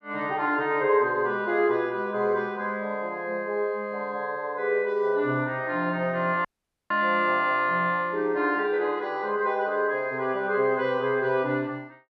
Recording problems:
dropout; at 6.5 s

